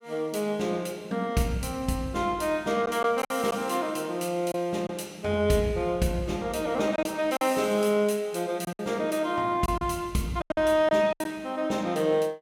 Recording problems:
packet loss; 5% of the sound replaced, filled with silence

